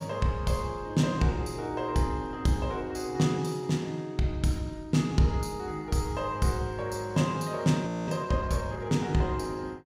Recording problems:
audio freezing; at 8 s

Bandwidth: 16 kHz